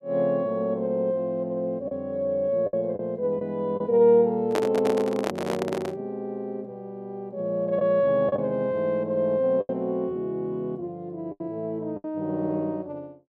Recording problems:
lost packets; 4% of the sound replaced, filled with the last packet
microphone handling noise; from 4.5 to 6 s; peak +3 dB vs average level

